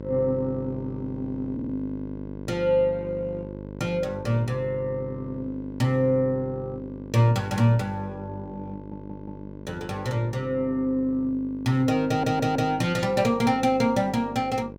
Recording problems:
hum; 50 Hz, harmonics up to 1.1 kHz, SNR 13 dB
stutter; at 1.5 s, at 8.5 s and at 12 s

